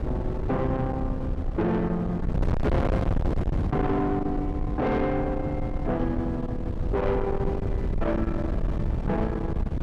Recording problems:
distorted audio; soft clipping, signal-to-distortion ratio 6 dB
wind noise; below 260 Hz, SNR 2 dB

